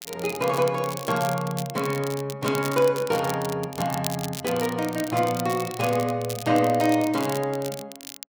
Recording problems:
crackling; vinyl, SNR 12 dB

